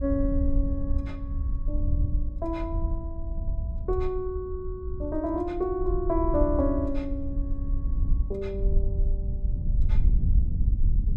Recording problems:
wind on the microphone; below 68 Hz, SNR -1 dB

